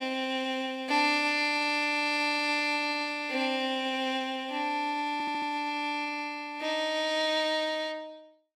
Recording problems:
audio stuttering; at 5 s

